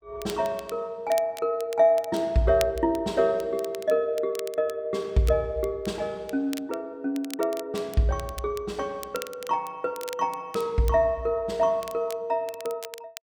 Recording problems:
crackle; vinyl, SNR 17 dB

